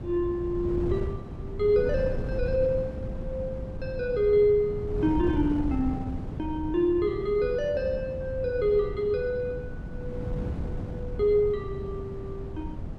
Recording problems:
wind noise; below 190 Hz, SNR 8 dB

